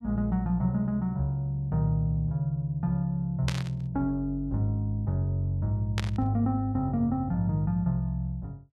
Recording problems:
burst of static; at 3.5 s and at 6 s; peak 0 dB vs average level

